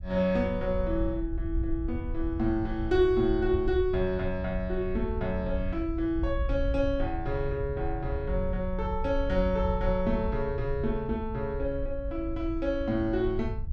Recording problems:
wind noise; below 72 Hz, SNR 6 dB

